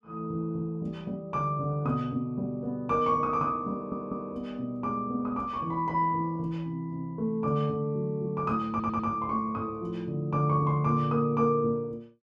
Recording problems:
audio stuttering; at 3.5 s and at 8.5 s

